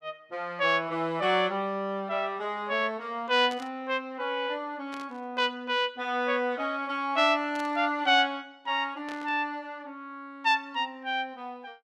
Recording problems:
static burst; 4 times, first at 3.5 s; peak -11 dB vs average level

